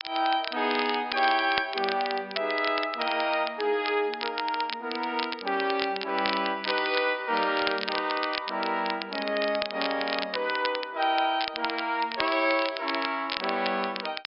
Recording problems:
treble cut off; nothing above 5.5 kHz
crackling; vinyl, SNR 7 dB

